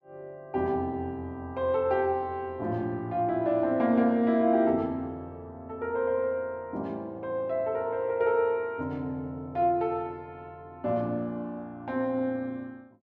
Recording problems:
none

